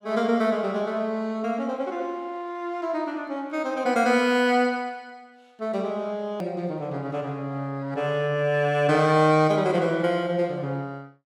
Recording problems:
edit click; at 6.5 s

